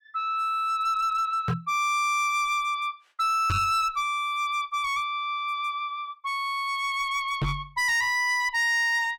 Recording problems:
distorted audio; hard clipping, signal-to-distortion ratio 7 dB
microphone bump; at 1.5 s, at 3.5 s and at 7.5 s; peak +3 dB vs average level

